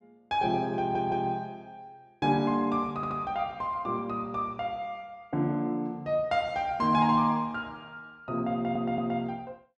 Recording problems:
stutter; at 1 s, at 3 s and at 8.5 s

